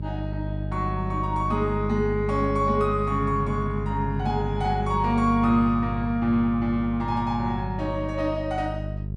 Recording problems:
hum; 50 Hz, harmonics up to 450 Hz, SNR 5 dB

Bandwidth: 12.5 kHz